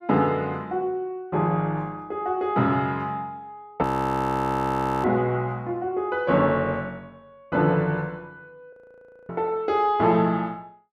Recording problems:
audio freezing; at 4 s for 1 s and at 8.5 s for 0.5 s

